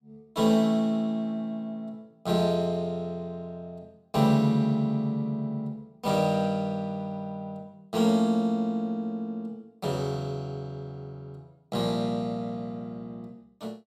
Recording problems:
none

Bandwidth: 16.5 kHz